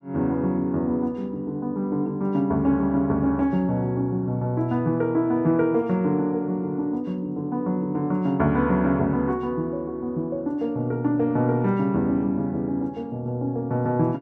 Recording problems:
none

